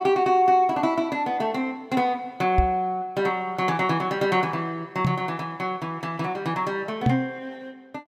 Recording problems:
microphone thump; at 2.5 s, at 5 s and at 7 s; peak +6 dB vs average level

